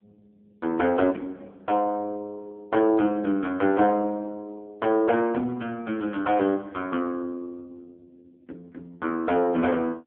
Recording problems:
phone line; 220 Hz to 3.2 kHz, AMR-NB

